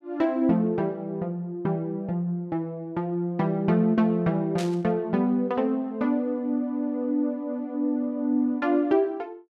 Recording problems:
burst of static; at 4.5 s; peak -6 dB vs average level

